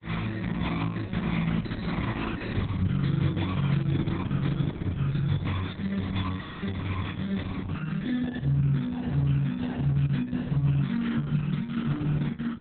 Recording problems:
lossy compression; AAC, then Opus, log-spectral distance 4 dB, nothing above 3.9 kHz
audio freezing; at 6.5 s

